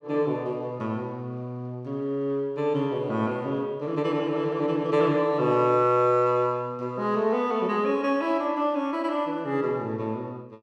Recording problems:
none

